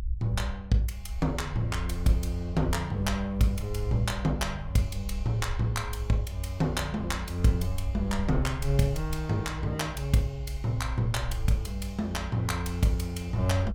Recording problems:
rumble; below 62 Hz, strongest tone 58 Hz, SNR 7 dB

